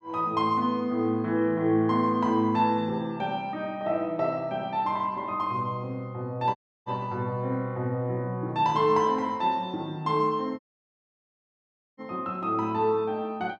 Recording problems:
dropout; at 6.5 s and at 11 s for 1.5 s

